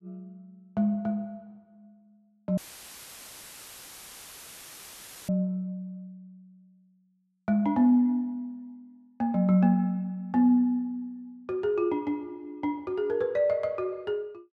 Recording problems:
dropout; at 2.5 s for 2.5 s; filled with static

